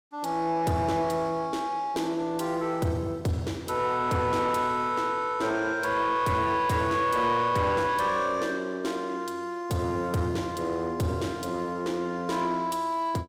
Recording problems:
distortion; soft clipping, signal-to-distortion ratio 12 dB

